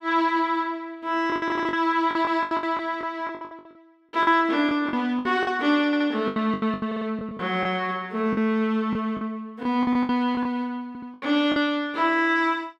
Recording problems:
packet loss; 13% of the sound replaced, filled with the last packet
audio stuttering; 4 times, first at 1.5 s

